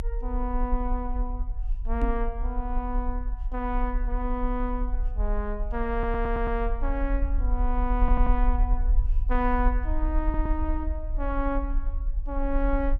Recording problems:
rumble; below 44 Hz, SNR -1 dB
knock on the microphone; at 2 s; peak +5 dB vs average level
audio stuttering; at 6 s, at 8 s and at 10 s

